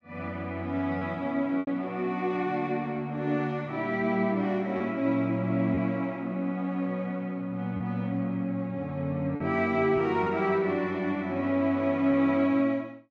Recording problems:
packet loss; 1.9% of the sound replaced, filled with repeated pitch periods

